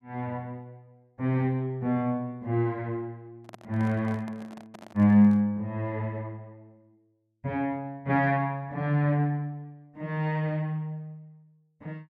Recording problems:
handling noise; from 3.5 to 5.5 s; peak -13 dB vs average level

